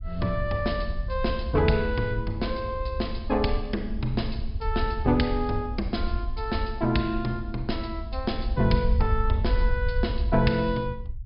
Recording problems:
low-pass filter; nothing above 5.5 kHz
rumble; below 70 Hz, SNR 4 dB

